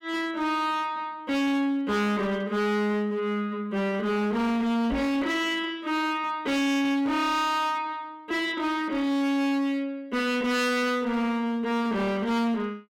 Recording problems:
distorted audio; hard clipping, signal-to-distortion ratio 7 dB
knock on the microphone; at 5 s; peak -1 dB vs average level

